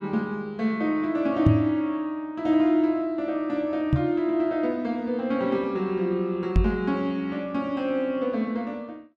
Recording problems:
microphone thump; at 1.5 s, at 4 s and at 6.5 s; peak +9 dB vs average level

